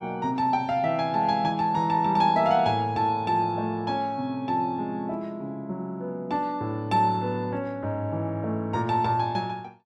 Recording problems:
none

